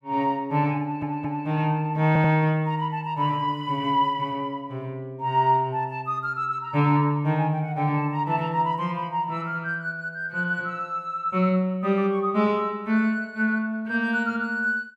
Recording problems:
audio stuttering; at 1 s and at 2 s

